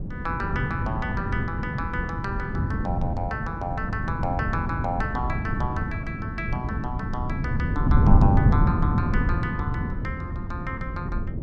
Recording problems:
wind on the microphone; below 180 Hz, SNR -5 dB

